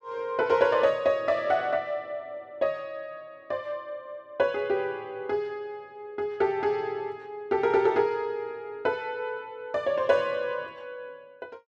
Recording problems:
none

